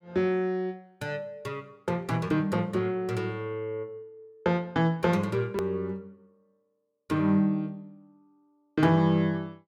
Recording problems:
edit click; at 5.5 s

